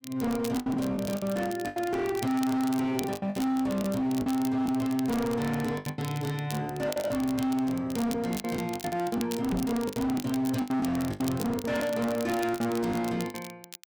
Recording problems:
distortion; hard clipping, signal-to-distortion ratio 7 dB
crackling; vinyl, SNR 14 dB
lost packets; 12% of the sound replaced, filled with the last packet
knock on the microphone; at 9.5 s; peak +4 dB vs average level

